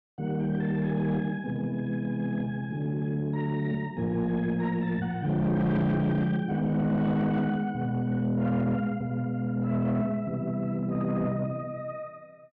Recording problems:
distorted audio; soft clipping, signal-to-distortion ratio 10 dB

